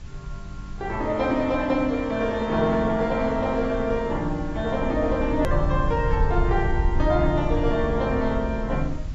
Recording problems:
lossy compression; AAC, log-spectral distance 2 dB
background hiss; SNR 26 dB
rumble; below 76 Hz, SNR 7 dB
click at an edit; at 5.5 s

